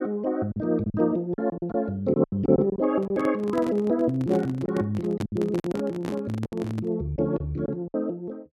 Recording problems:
packet loss; 9% of the sound replaced, filled with silence
handling noise; from 3 to 7 s; peak -2 dB vs average level

